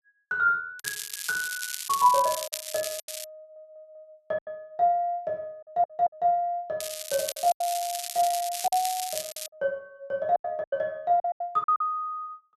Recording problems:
packet loss; 8% of the sound replaced, filled with silence
crackling; from 1 to 3 s and from 7 to 9.5 s; loose cable, SNR 6 dB
stutter; at 3.5 s and at 5.5 s

